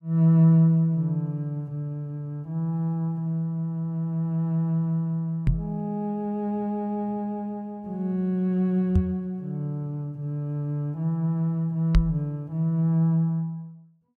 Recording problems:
microphone bump; at 5.5 s, at 9 s and at 12 s; peak +7 dB vs average level

